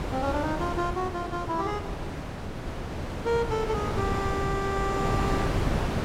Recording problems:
wind noise; below 660 Hz, SNR 1 dB

